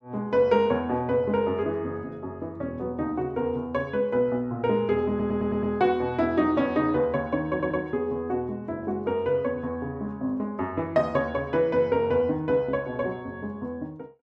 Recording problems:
audio stuttering; at 5 s and at 7.5 s

